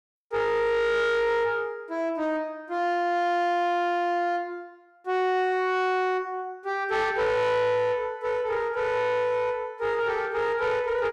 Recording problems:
distorted audio; soft clipping, signal-to-distortion ratio 11 dB

